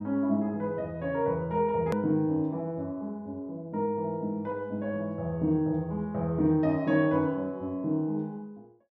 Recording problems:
edit click; at 2 s

